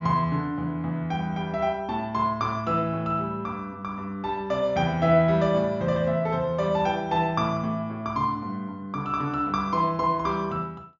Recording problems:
low-pass filter; nothing above 7 kHz

